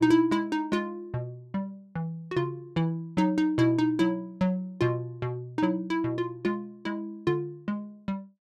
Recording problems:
none

